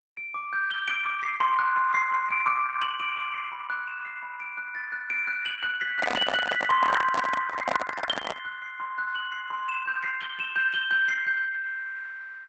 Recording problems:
lossy codec; Opus, log-spectral distance 4 dB, nothing above 8 kHz
microphone handling noise; from 6 to 8.5 s; peak +3 dB vs average level

